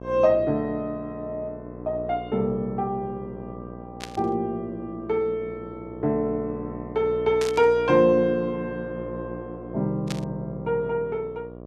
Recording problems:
electrical hum; 60 Hz, harmonics up to 1.3 kHz, SNR 13 dB
static burst; at 4 s, at 7.5 s and at 10 s; peak -4 dB vs average level

